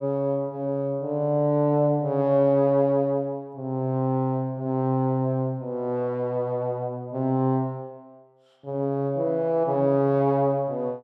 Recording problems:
none

